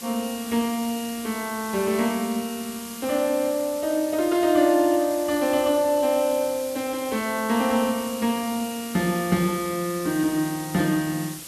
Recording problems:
background hiss; SNR 12 dB

